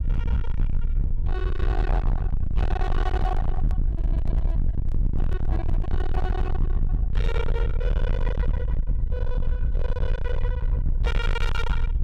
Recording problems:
distorted audio; hard clipping, signal-to-distortion ratio 6 dB
low-frequency rumble; below 64 Hz, SNR -7 dB
microphone handling noise; from 3 to 6.5 s; peak -6 dB vs average level

